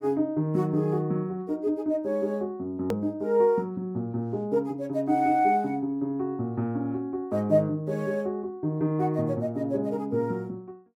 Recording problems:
hard cut with a click; at 3 s

